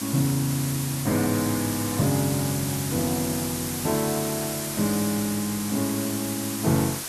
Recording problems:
background hiss; slope 0 dB per octave, SNR 4 dB

